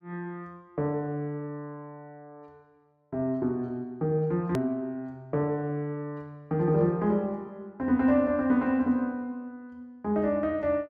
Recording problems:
edit click; at 4.5 s

